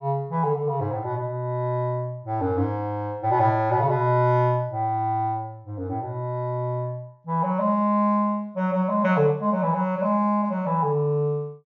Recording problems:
treble cut off; nothing above 7 kHz

